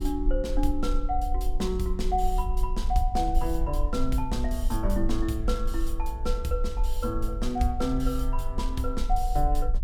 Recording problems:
rumble; below 46 Hz, SNR 1 dB

